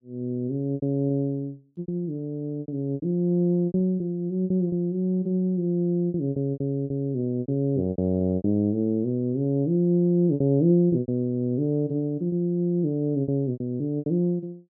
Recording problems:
lost packets; 11% of the sound replaced, filled with repeated pitch periods

